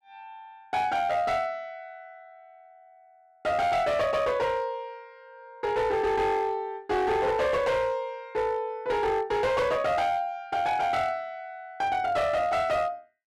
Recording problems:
distorted audio; hard clipping, signal-to-distortion ratio 10 dB

